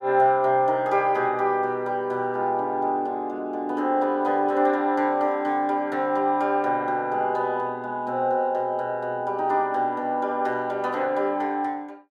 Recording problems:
none

